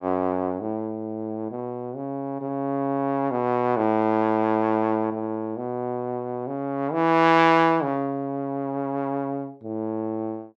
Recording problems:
none

